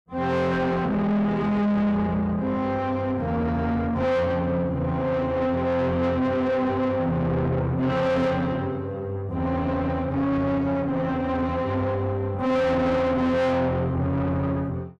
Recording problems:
distortion; soft clipping, signal-to-distortion ratio 7 dB

